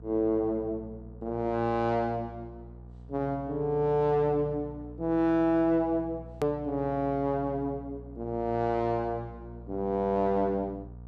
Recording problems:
hum; 60 Hz, harmonics up to 720 Hz, SNR 17 dB
edit click; at 6.5 s

